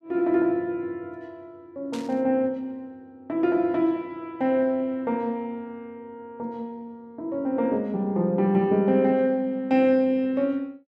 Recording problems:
static burst; at 2 s; peak -11 dB vs average level

